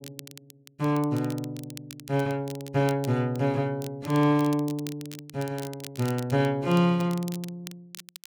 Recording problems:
crackling; vinyl, SNR 18 dB

